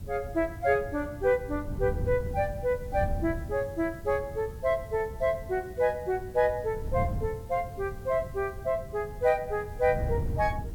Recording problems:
background hiss; slope 0 dB per octave, SNR 27 dB
wind noise; below 130 Hz, SNR 9 dB

